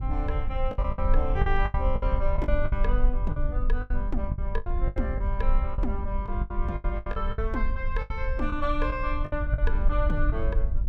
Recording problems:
low-frequency rumble; below 54 Hz, strongest tone 22 Hz, SNR -3 dB
lost packets; 13% of the sound replaced, filled with the last packet

